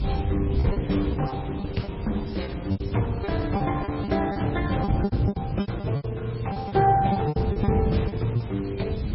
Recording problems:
lossy codec; Opus, then MP3, log-spectral distance 4 dB, nothing above 5.5 kHz
background hiss; SNR 20 dB
low-frequency rumble; below 170 Hz, SNR 1 dB
wind on the microphone; below 290 Hz, SNR 17 dB
packet loss; 15% of the sound replaced, filled with repeated pitch periods

